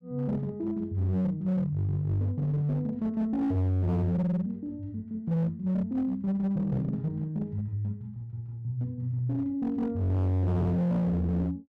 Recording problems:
distortion; hard clipping, uneven, signal-to-distortion ratio 6 dB

